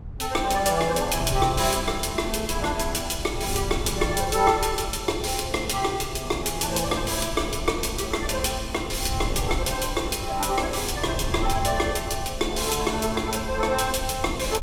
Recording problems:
wind noise; below 98 Hz, SNR 10 dB

